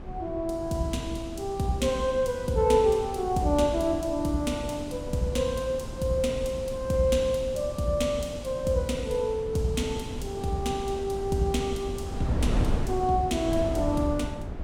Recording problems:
wind on the microphone; below 230 Hz, SNR 9 dB

